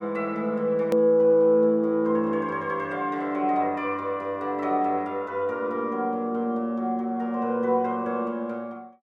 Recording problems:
click at an edit; at 1 s

